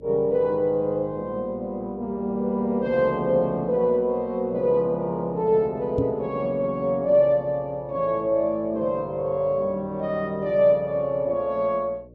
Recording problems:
hum; 60 Hz, harmonics up to 600 Hz, SNR 25 dB
knock on the microphone; at 6 s; peak +1 dB vs average level

